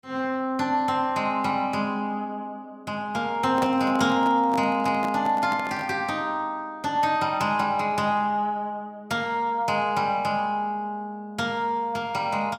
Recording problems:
microphone handling noise; from 3.5 to 6 s; peak -2 dB vs average level

